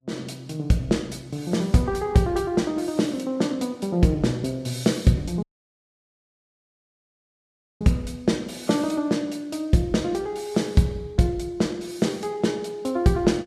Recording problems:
lossy codec; Vorbis, log-spectral distance 2 dB, nothing above 13.1 kHz
audio cutting out; at 5.5 s for 2.5 s

